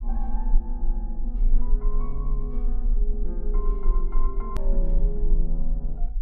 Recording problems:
rumble; below 34 Hz, strongest tone 22 Hz, SNR -10 dB
hard cut with a click; at 4.5 s

